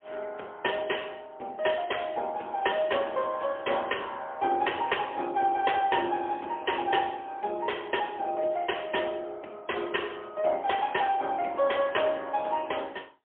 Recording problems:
telephone audio; 300 Hz to 3.3 kHz, AMR-NB, then MP3

